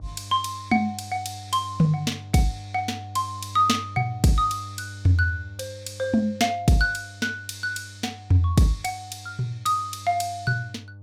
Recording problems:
hum; 50 Hz, harmonics up to 600 Hz, SNR 17 dB

